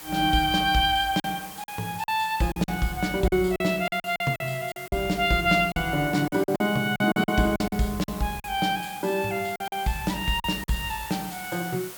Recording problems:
background hiss; SNR 15 dB
lost packets; 9% of the sound replaced, filled with silence

